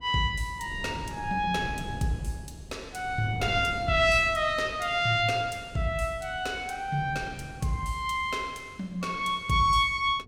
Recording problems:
wind on the microphone; below 240 Hz, SNR 16 dB

